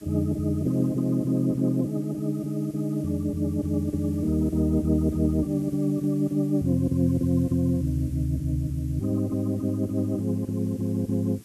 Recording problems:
hiss; slope +1 dB per octave, SNR 27 dB

